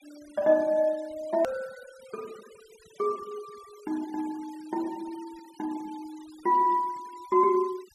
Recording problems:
noise reduction artefacts; signal-to-artefact ratio 25 dB
edit click; at 1.5 s

